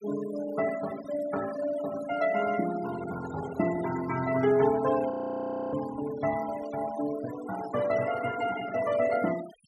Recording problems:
denoising artefacts; signal-to-artefact ratio 14 dB
frozen audio; at 5 s for 0.5 s

